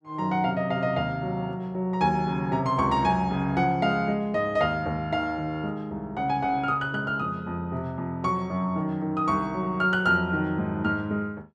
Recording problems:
none

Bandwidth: 12 kHz